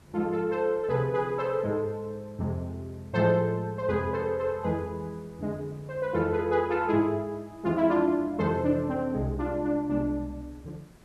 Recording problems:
hiss; slope -5 dB per octave, SNR 28 dB

